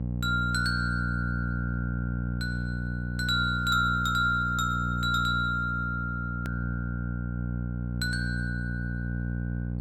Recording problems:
hum; 60 Hz, harmonics up to 540 Hz, SNR 3 dB
click at an edit; at 6.5 s

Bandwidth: 18.5 kHz